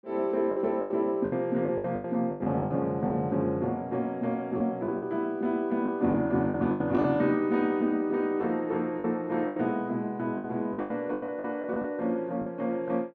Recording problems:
lost packets; 10% of the sound replaced, filled with the last packet

